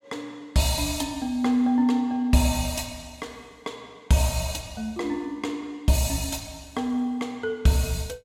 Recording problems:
none

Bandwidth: 16 kHz